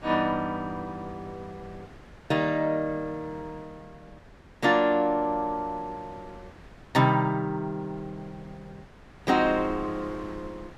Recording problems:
wind on the microphone; below 870 Hz, SNR 21 dB

